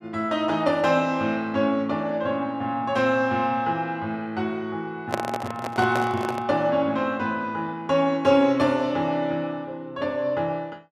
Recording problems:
microphone handling noise; from 5 to 6.5 s; peak +2 dB vs average level

